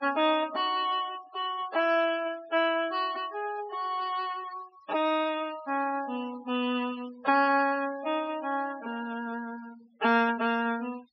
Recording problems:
treble missing; nothing above 5.5 kHz
denoising artefacts; signal-to-artefact ratio 18 dB

